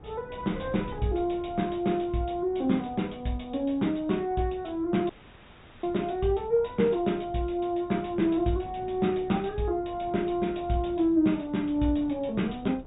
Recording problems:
treble missing; nothing above 3.8 kHz
codec artefacts; MP2, log-spectral distance 2 dB
wind noise; below 300 Hz, SNR 19 dB
audio cutting out; at 5 s for 0.5 s

